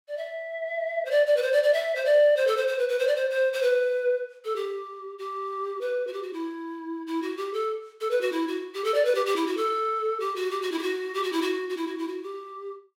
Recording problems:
none

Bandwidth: 16 kHz